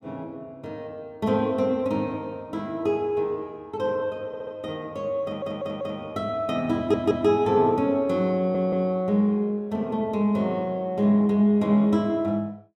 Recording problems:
stutter; 4 times, first at 4.5 s

